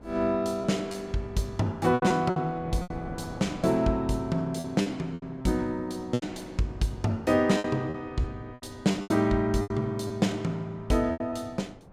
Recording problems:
wind on the microphone; below 530 Hz, SNR 20 dB
lost packets; 9% of the sound replaced, filled with repeated pitch periods

